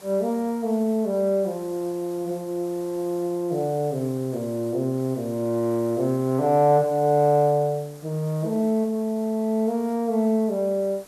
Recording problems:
hiss; slope -3 dB per octave, SNR 23 dB

